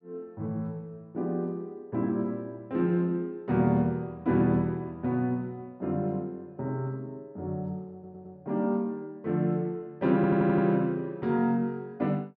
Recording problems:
stutter; at 8 s and at 10 s

